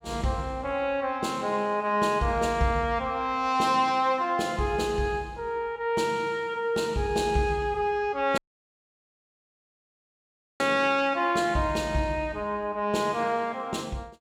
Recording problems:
audio cutting out; at 8.5 s for 2 s

